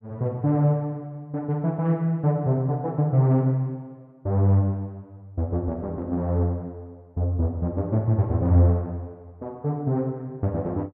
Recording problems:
none

